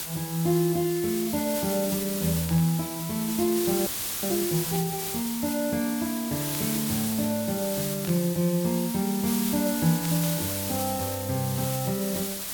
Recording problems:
background hiss; slope 0 dB per octave, SNR 4 dB
static burst; 5 times, first at 2.5 s; peak -8 dB vs average level
audio freezing; at 4 s

